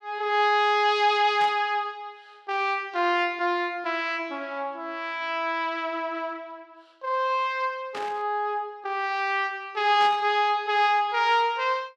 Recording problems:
burst of static; at 1.5 s, at 8 s and at 10 s; peak -8 dB vs average level

